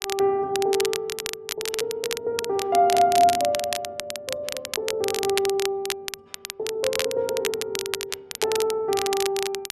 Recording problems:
crackle; vinyl, SNR 6 dB

